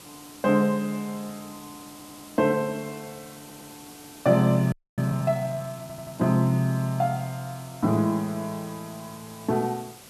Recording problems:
background hiss; SNR 19 dB
stutter; at 2 s, at 3.5 s and at 6 s
frozen audio; at 4.5 s

